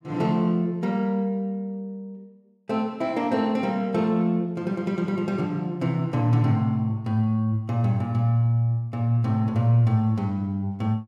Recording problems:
none

